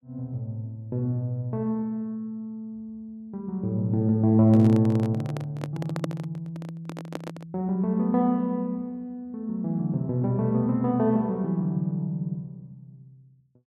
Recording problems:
handling noise; from 4.5 to 7.5 s; peak 0 dB vs average level

